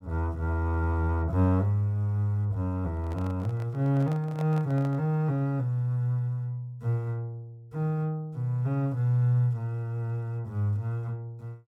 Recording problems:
microphone handling noise; from 3 to 5 s; peak -9 dB vs average level

